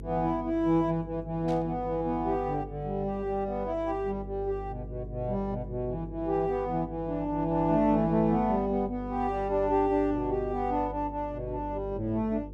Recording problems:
mains hum; 50 Hz, harmonics up to 500 Hz, SNR 13 dB
static burst; at 1.5 s; peak -15 dB vs average level

